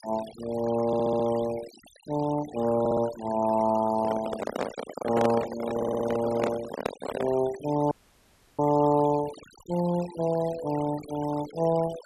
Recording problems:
noise reduction artefacts; signal-to-artefact ratio 15 dB
stutter; at 1 s, at 3 s and at 6 s
microphone handling noise; from 4 to 7.5 s; peak +2 dB vs average level
dropout; at 8 s for 0.5 s

